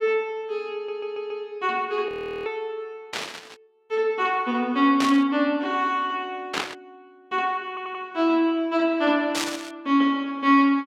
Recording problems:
stutter; at 1 s and at 7.5 s
audio freezing; at 2 s
burst of static; 4 times, first at 3 s; peak +1 dB vs average level

